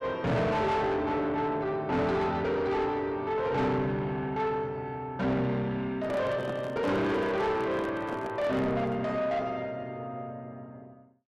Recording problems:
distorted audio; soft clipping, signal-to-distortion ratio 7 dB
microphone handling noise; from 6 to 9 s; peak -3 dB vs average level

